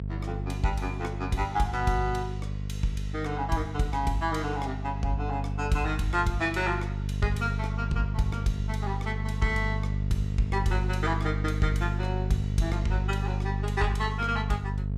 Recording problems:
hum; 50 Hz, harmonics up to 450 Hz, SNR 1 dB

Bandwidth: 15.5 kHz